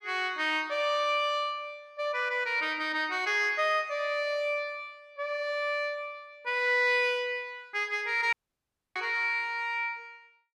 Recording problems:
audio cutting out; at 8.5 s for 0.5 s

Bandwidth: 14.5 kHz